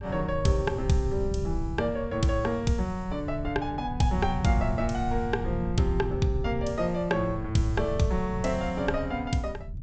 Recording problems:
treble cut off; nothing above 8 kHz
low-frequency rumble; below 110 Hz, SNR 7 dB

